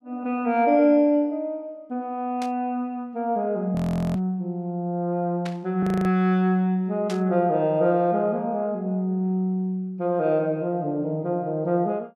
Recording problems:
burst of static; 4 times, first at 2.5 s; peak -8 dB vs average level
audio freezing; at 4 s and at 6 s

